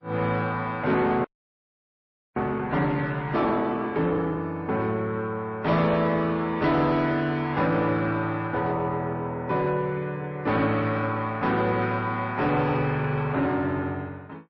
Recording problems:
codec artefacts; MP3, then MP3, log-spectral distance 2 dB, nothing above 5.2 kHz
distorted audio; soft clipping, signal-to-distortion ratio 11 dB
frozen audio; at 1.5 s for 1 s

